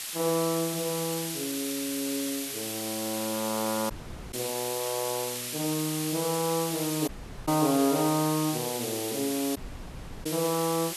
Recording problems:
background hiss; slope +3 dB per octave, SNR 3 dB
dropout; at 4 s, at 7 s and at 9.5 s for 0.5 s

